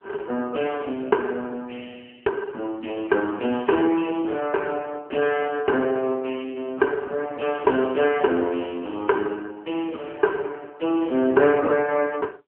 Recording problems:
telephone audio; 220 Hz to 3.3 kHz, AMR-NB

